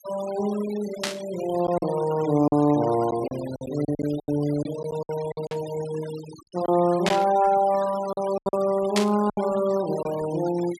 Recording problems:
denoising artefacts; signal-to-artefact ratio 16 dB
lost packets; 8% of the sound replaced, filled with silence
burst of static; 4 times, first at 1 s; peak +4 dB vs average level

